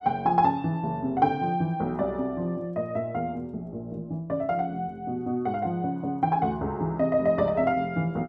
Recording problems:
none

